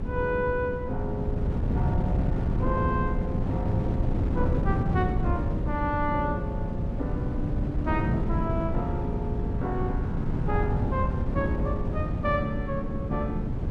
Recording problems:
wind on the microphone; below 180 Hz, SNR -2 dB

